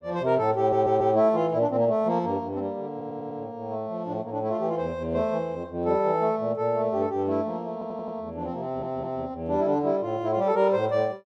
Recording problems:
stutter; 4 times, first at 0.5 s

